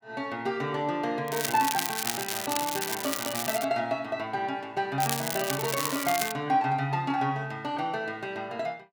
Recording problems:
crackle; from 1.5 to 3.5 s and from 5 to 6.5 s; loose cable, SNR 2 dB

